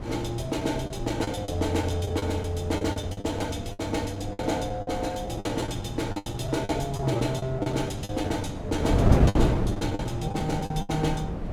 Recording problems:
wind noise; below 310 Hz, SNR 2 dB
lost packets; 13% of the sound replaced, filled with the last packet

